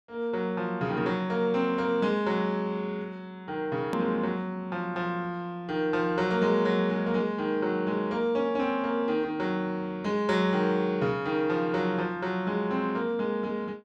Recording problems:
hard cut with a click; at 4 s

